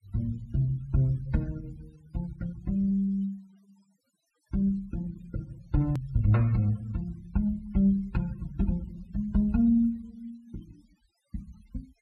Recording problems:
denoising artefacts; signal-to-artefact ratio 27 dB
hard cut with a click; at 6 s

